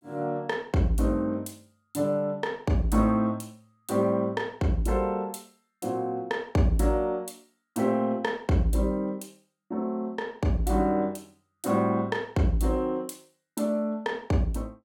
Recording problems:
none

